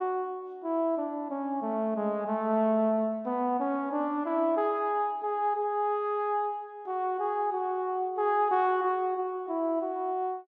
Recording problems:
none

